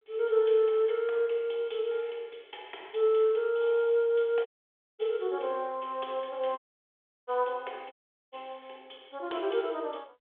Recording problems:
phone line; 340 Hz to 3.5 kHz, G.726
audio cutting out; at 4.5 s for 0.5 s, at 6.5 s for 0.5 s and at 8 s

